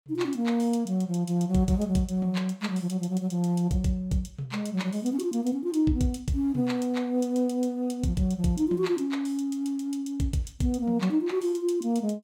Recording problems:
none

